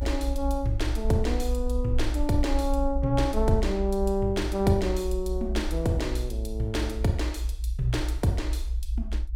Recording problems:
low-frequency rumble; below 60 Hz, SNR 3 dB

